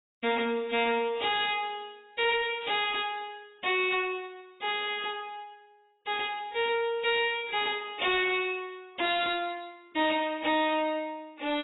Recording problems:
lossy compression; AAC, log-spectral distance 5 dB, nothing above 3.5 kHz
distorted audio; soft clipping, signal-to-distortion ratio 7 dB

